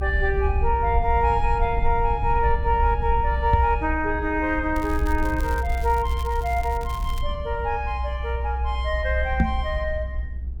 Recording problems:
rumble; below 64 Hz, SNR 3 dB
microphone thump; at 3.5 s and at 9.5 s; peak +9 dB vs average level
crackle; from 5 to 7 s; loose cable, SNR 20 dB

